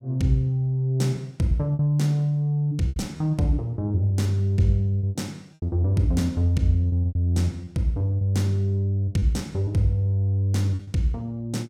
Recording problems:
lost packets; 8% of the sound replaced, filled with repeated pitch periods

